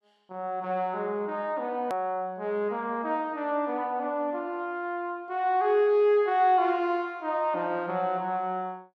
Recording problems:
click at an edit; at 2 s

